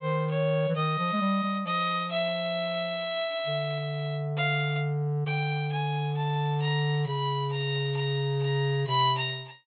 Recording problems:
treble cut off; nothing above 4 kHz

